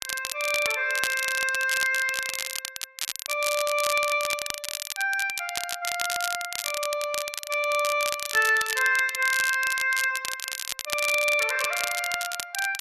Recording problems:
crackling; vinyl, SNR 6 dB

